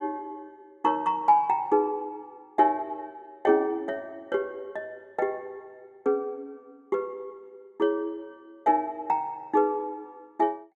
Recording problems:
none

